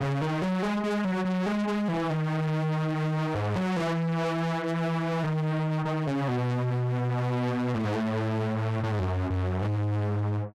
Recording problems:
distortion; hard clipping, signal-to-distortion ratio 6 dB

